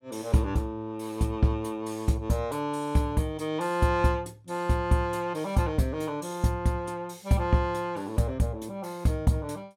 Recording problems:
none

